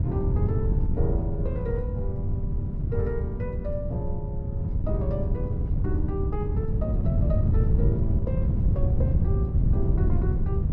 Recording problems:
wind noise; below 130 Hz, SNR -8 dB

